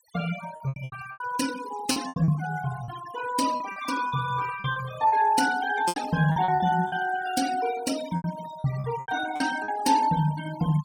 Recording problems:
noise reduction artefacts; signal-to-artefact ratio 11 dB
lost packets; 12% of the sound replaced, filled with repeated pitch periods

